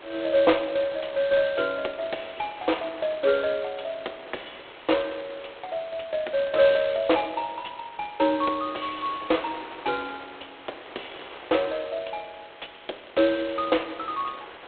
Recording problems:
phone line; 280 Hz to 3.9 kHz, G.726
background hiss; SNR 23 dB
wind on the microphone; below 2.2 kHz, SNR 19 dB

